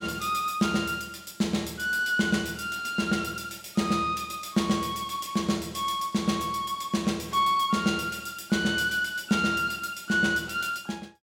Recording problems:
none

